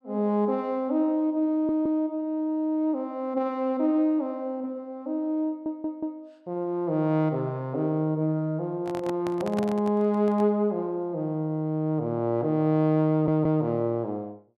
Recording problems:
audio stuttering; at 1.5 s, at 5.5 s and at 13 s
microphone handling noise; from 9 to 10 s; peak -5 dB vs average level

